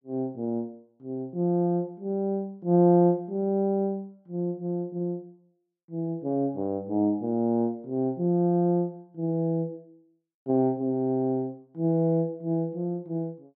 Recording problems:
none

